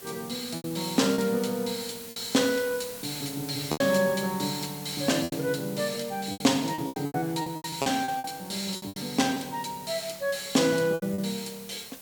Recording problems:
hiss; slope -1 dB per octave, SNR 13 dB
packet loss; 10% of the sound replaced, filled with repeated pitch periods

